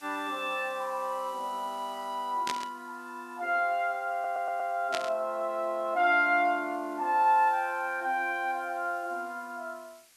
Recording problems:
hiss; slope +2 dB per octave, SNR 26 dB
burst of static; at 2.5 s and at 5 s; peak 0 dB vs average level
audio stuttering; at 4 s

